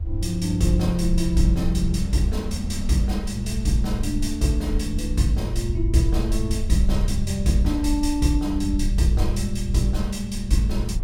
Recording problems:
low-frequency rumble; below 66 Hz, SNR 5 dB
wind noise; below 260 Hz, SNR 20 dB

